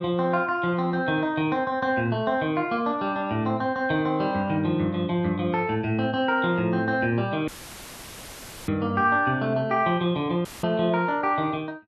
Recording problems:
audio cutting out; at 7.5 s for 1 s and at 10 s; filled with static

